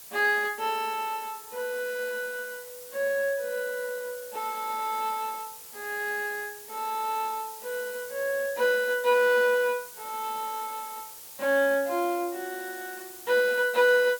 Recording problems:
background hiss; slope 0 dB per octave, SNR 14 dB

